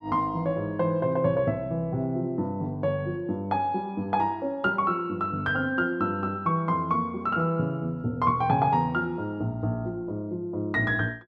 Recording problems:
none

